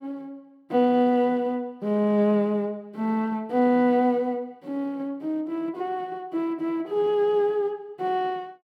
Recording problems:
none

